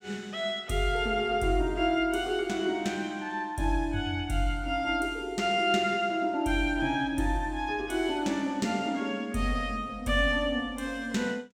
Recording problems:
none

